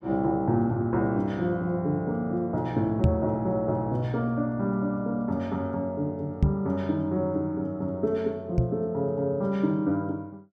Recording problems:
microphone bump; at 3 s, at 6.5 s and at 8.5 s; peak +9 dB vs average level

